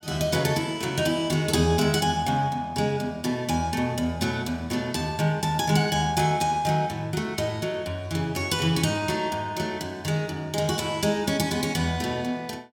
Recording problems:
none

